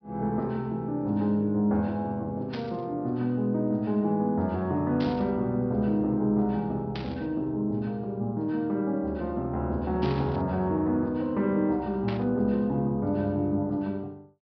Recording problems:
low-pass filter; nothing above 5.5 kHz
burst of static; 5 times, first at 2.5 s; peak -7 dB vs average level

